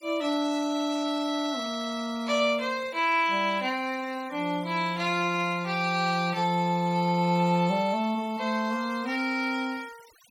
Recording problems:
denoising artefacts; signal-to-artefact ratio 22 dB

